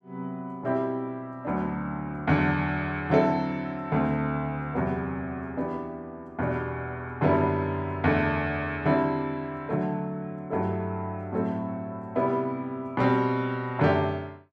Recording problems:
none

